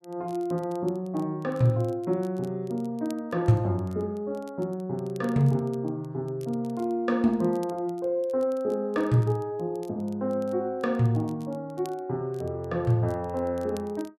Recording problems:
crackle; vinyl, SNR 29 dB

